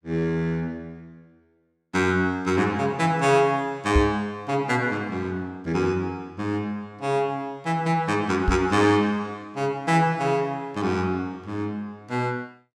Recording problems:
microphone thump; at 4 s and at 8.5 s; peak +7 dB vs average level

